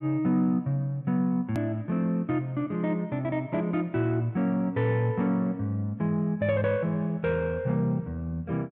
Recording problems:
click at an edit; at 1.5 s

